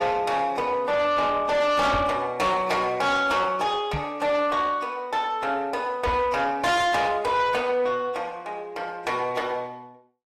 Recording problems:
lossy codec; AAC, log-spectral distance 2 dB, nothing above 15.1 kHz
distorted audio; soft clipping, signal-to-distortion ratio 8 dB
knock on the microphone; at 2 s, at 4 s and at 6 s; peak -2 dB vs average level

